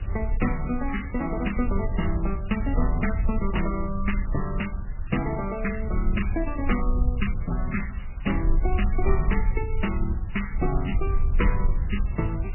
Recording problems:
lossy compression; MP3, log-spectral distance 8 dB, nothing above 2.9 kHz
background hiss; SNR 21 dB
rumble; below 62 Hz, SNR 0 dB

